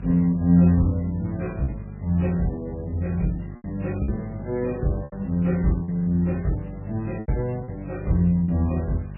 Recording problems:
lossy codec; MP3, log-spectral distance 5 dB, nothing above 2.6 kHz
hum; 50 Hz, harmonics up to 600 Hz, SNR 13 dB
background hiss; SNR 29 dB
packet loss; 5% of the sound replaced, filled with repeated pitch periods

